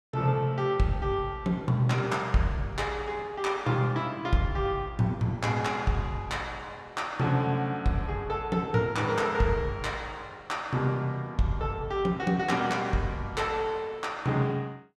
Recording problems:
none

